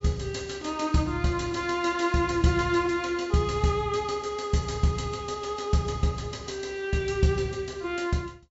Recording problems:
treble missing; nothing above 8 kHz

